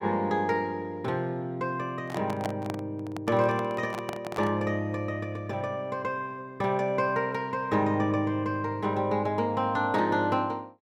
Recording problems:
microphone handling noise; from 2 to 4.5 s; peak 0 dB vs average level

